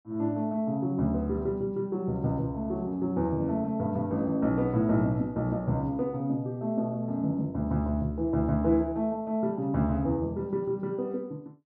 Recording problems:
none

